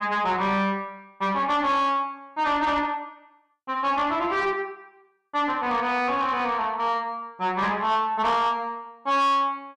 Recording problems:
distortion; soft clipping, signal-to-distortion ratio 10 dB

